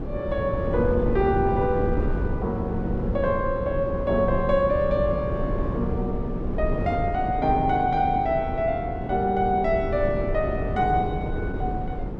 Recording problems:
wind noise; below 320 Hz, SNR 4 dB

